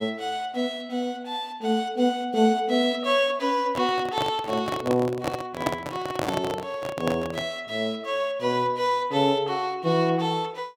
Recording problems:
microphone handling noise; from 3.5 to 7.5 s; peak +4 dB vs average level

